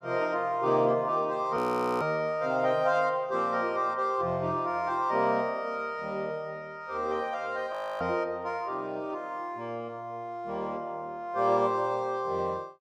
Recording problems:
frozen audio; at 1.5 s and at 7.5 s

